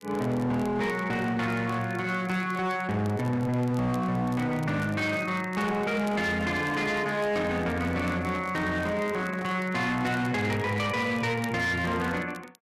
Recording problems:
distortion; hard clipping, uneven, signal-to-distortion ratio 10 dB
crackle; vinyl, SNR 25 dB
handling noise; from 6 to 9.5 s; peak -9 dB vs average level

